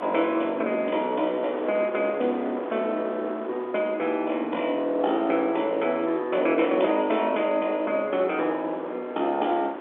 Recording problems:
phone line; 260 Hz to 3.8 kHz, G.711
wind noise; below 970 Hz, SNR 12 dB

